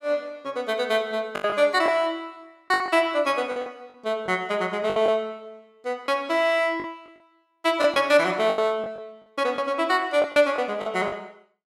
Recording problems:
packet loss; 8% of the sound replaced, filled with the last packet

